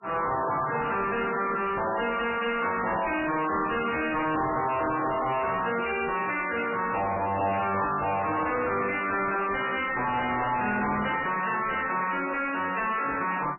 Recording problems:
lossy codec; MP3, log-spectral distance 7 dB, nothing above 2.8 kHz
distorted audio; soft clipping, signal-to-distortion ratio 6 dB

